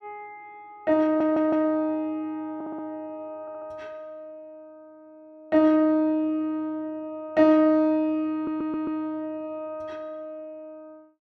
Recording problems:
audio stuttering; 4 times, first at 1 s

